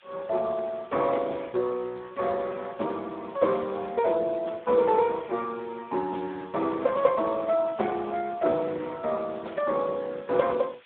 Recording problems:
telephone audio; 280 Hz to 3.9 kHz, Speex
hiss; SNR 27 dB

